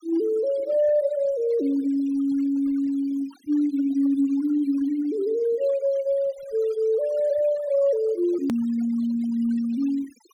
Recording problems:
denoising artefacts; signal-to-artefact ratio 22 dB
edit click; at 8.5 s

